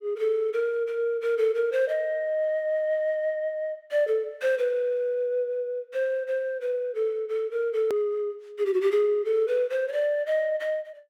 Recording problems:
hard cut with a click; at 8 s

